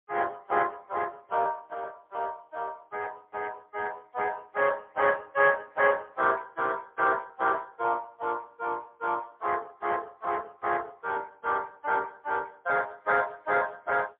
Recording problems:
telephone audio; 320 Hz to 2.8 kHz, AMR-NB, then MP3

